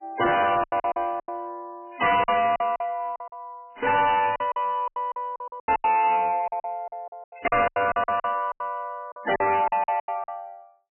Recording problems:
codec artefacts; MP3, log-spectral distance 3 dB, nothing above 2.4 kHz
distortion; soft clipping, signal-to-distortion ratio 8 dB
packet loss; 17% of the sound replaced, filled with silence

